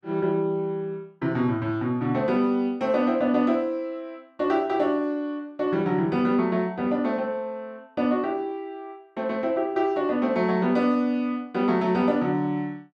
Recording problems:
none

